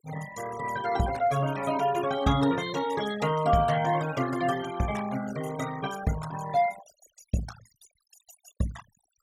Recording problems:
denoising artefacts; signal-to-artefact ratio 13 dB

